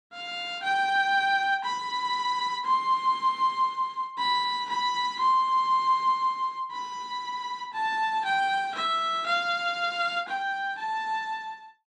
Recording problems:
none

